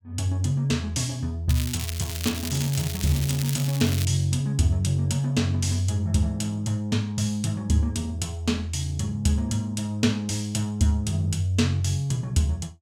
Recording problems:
crackling; from 1.5 to 4 s; loose cable, SNR 8 dB

